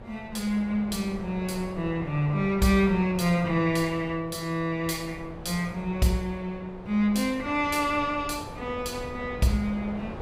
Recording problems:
wind on the microphone; below 670 Hz, SNR 14 dB

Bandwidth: 15.5 kHz